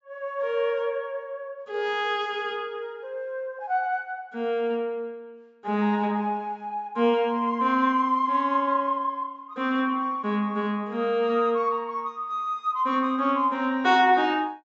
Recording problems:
low-pass filter; nothing above 8 kHz

